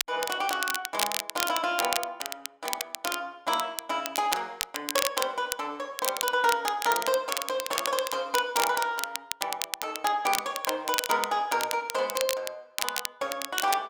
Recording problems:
crackling; vinyl, SNR 3 dB

